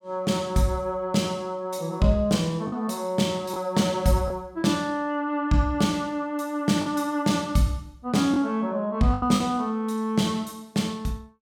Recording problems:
lost packets; 2% of the sound replaced, filled with the last packet

